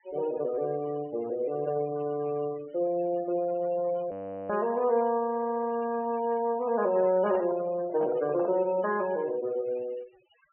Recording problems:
treble cut off; nothing above 3 kHz
denoising artefacts; signal-to-artefact ratio 19 dB
frozen audio; at 4 s
audio stuttering; at 5.5 s
microphone handling noise; from 7 to 9 s; peak -4 dB vs average level

